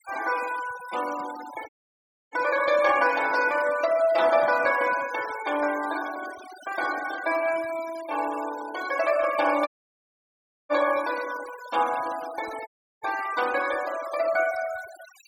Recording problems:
noise reduction artefacts; signal-to-artefact ratio 16 dB
audio cutting out; at 1.5 s for 0.5 s, at 9.5 s for 1 s and at 13 s

